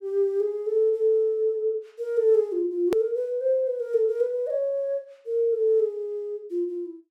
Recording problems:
edit click; at 3 s

